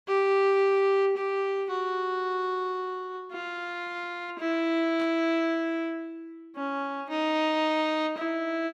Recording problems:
static burst; at 5 s; peak -13 dB vs average level

